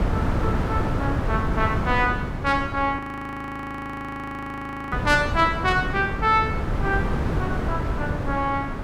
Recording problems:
wind on the microphone; below 370 Hz, SNR 2 dB
frozen audio; at 3 s for 2 s

